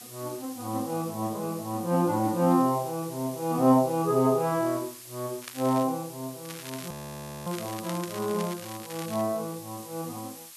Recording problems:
hiss; slope +4 dB per octave, SNR 15 dB
crackle; at 5.5 s and from 6.5 to 9 s; loose cable, SNR 15 dB
audio freezing; at 7 s for 0.5 s

